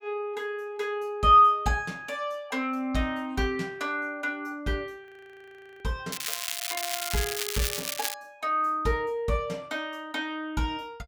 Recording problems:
audio freezing; at 5 s for 1 s
crackle; from 6 to 8 s; loose cable, SNR 3 dB

